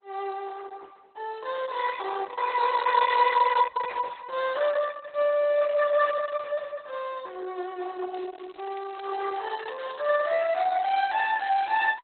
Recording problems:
lossy codec; Opus, log-spectral distance 5 dB, nothing above 4 kHz
crackling; at 3 s and from 8 to 11 s; loose cable, SNR 27 dB

